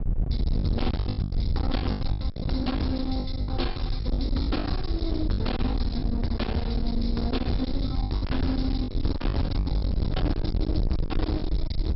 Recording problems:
treble cut off; nothing above 5.4 kHz
distorted audio; hard clipping, signal-to-distortion ratio 7 dB
wind on the microphone; below 110 Hz, SNR 0 dB
lost packets; 13% of the sound replaced, filled with the last packet
crackling; from 8.5 to 11 s; loose cable, SNR 23 dB

